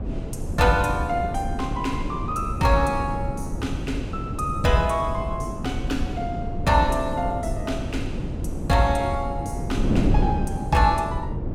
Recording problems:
wind on the microphone; below 230 Hz, SNR 4 dB

